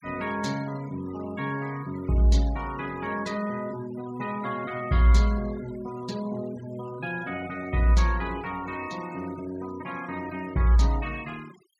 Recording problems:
noise reduction artefacts; signal-to-artefact ratio 19 dB

